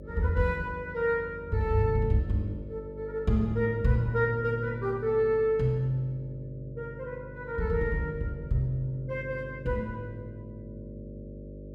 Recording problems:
hum; 50 Hz, harmonics up to 600 Hz, SNR 15 dB

